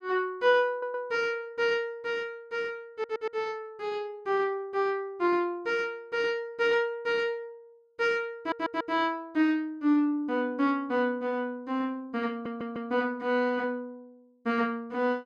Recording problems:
stutter; 4 times, first at 0.5 s

